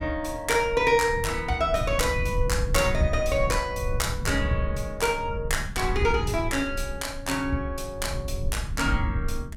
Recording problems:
rumble; below 98 Hz, SNR 6 dB

